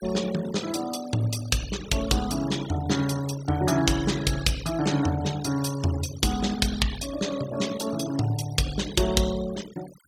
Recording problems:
denoising artefacts; signal-to-artefact ratio 14 dB

